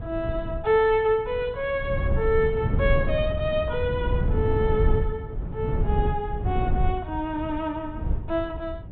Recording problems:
low-pass filter; nothing above 4 kHz
wind noise; below 130 Hz, SNR 2 dB

